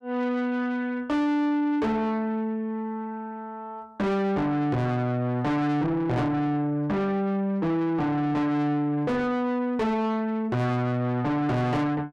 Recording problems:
distorted audio; soft clipping, signal-to-distortion ratio 7 dB

